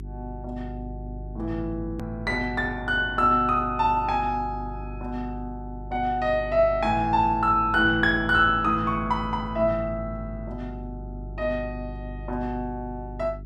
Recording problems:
hum; 50 Hz, harmonics up to 400 Hz, SNR 13 dB
edit click; at 2 s

